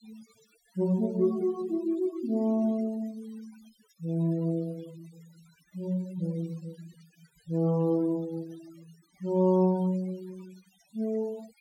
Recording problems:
denoising artefacts; signal-to-artefact ratio 25 dB

